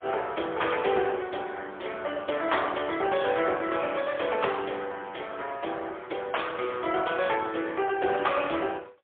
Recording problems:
telephone audio; 300 Hz to 3.5 kHz, AMR-NB, then MP3

